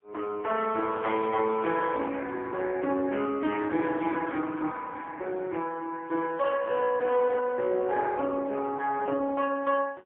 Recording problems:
telephone audio; 240 Hz to 2.8 kHz, AMR-NB, then MP3

